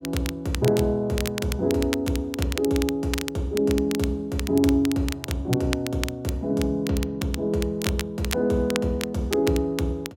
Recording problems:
crackling; vinyl, SNR 10 dB

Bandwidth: 16 kHz